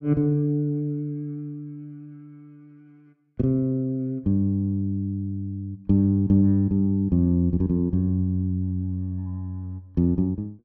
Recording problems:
none

